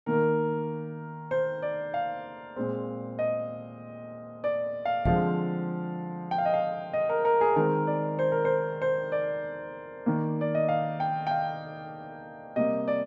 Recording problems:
microphone thump; at 5 s; peak +4 dB vs average level

